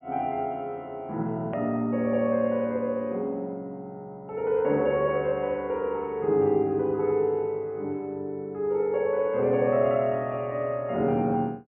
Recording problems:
treble cut off; nothing above 3.1 kHz
edit click; at 1.5 s

